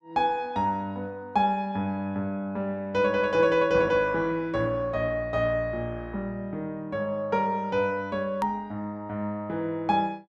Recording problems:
hard cut with a click; at 8.5 s

